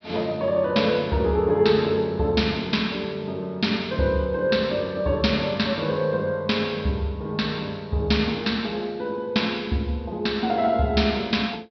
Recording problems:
treble cut off; nothing above 5.5 kHz

